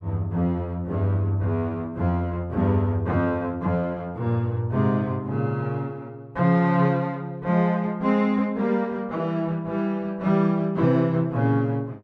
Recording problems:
none

